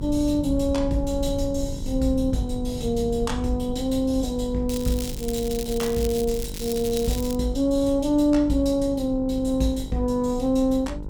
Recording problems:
hum; 50 Hz, harmonics up to 1.1 kHz, SNR 16 dB
rumble; below 96 Hz, SNR 11 dB
crackling; from 4.5 to 7.5 s; loose cable, SNR 12 dB

